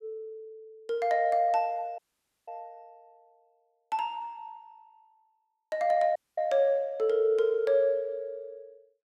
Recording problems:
audio cutting out; at 2 s and at 6 s

